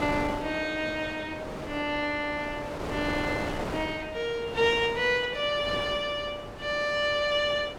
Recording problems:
wind noise; below 1.1 kHz, SNR 9 dB

